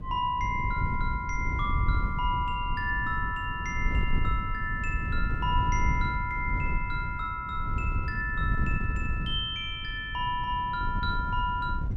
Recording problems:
wind noise; below 100 Hz, SNR 2 dB

